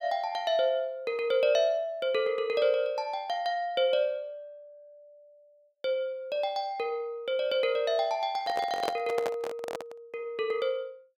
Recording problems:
handling noise; from 8.5 to 10 s; peak +2 dB vs average level

